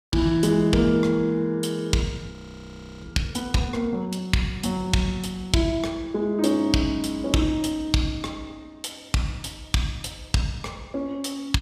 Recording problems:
frozen audio; at 2.5 s for 0.5 s

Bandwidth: 15.5 kHz